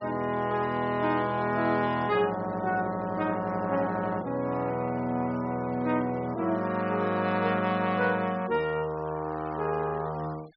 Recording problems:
treble missing; nothing above 5.6 kHz
noise reduction artefacts; signal-to-artefact ratio 22 dB

